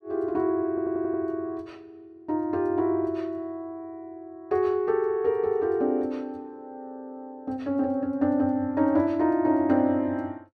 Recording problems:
audio stuttering; at 0.5 s

